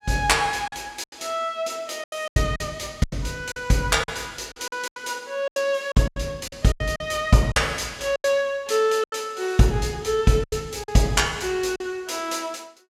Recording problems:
packet loss; 11% of the sound replaced, filled with silence

